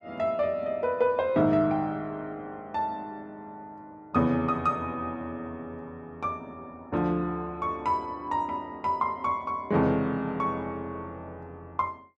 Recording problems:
none

